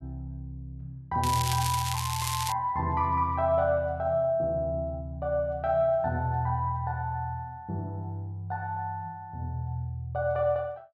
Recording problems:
crackle; from 1 to 2.5 s; loose cable, SNR 4 dB

